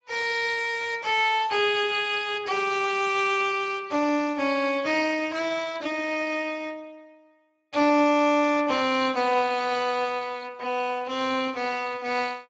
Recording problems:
lossy codec; Speex, log-spectral distance 5 dB, nothing above 7.3 kHz

